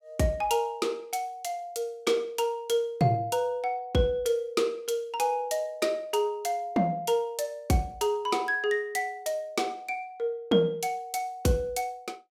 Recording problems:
none

